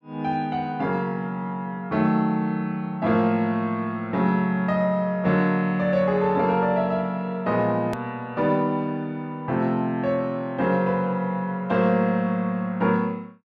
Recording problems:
click at an edit; at 8 s

